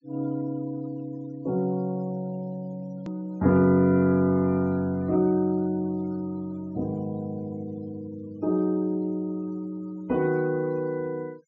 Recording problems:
low-pass filter; nothing above 8 kHz
noise reduction artefacts; signal-to-artefact ratio 27 dB
hard cut with a click; at 3 s

